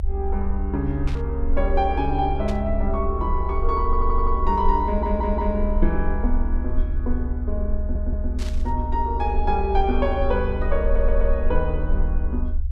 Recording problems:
rumble; below 68 Hz, strongest tone 24 Hz, SNR 1 dB
burst of static; at 1 s, at 2.5 s and at 8.5 s; peak -8 dB vs average level
audio stuttering; 4 times, first at 4 s

